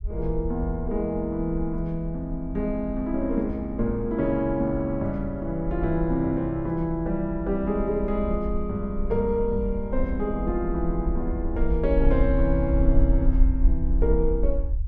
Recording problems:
rumble; below 54 Hz, SNR 4 dB

